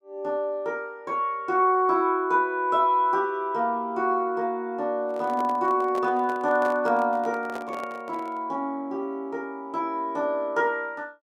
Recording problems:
microphone handling noise; from 5 to 8.5 s; peak -8 dB vs average level

